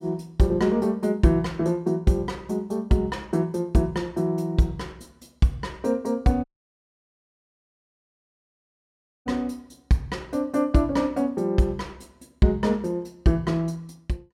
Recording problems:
audio cutting out; at 6.5 s for 3 s

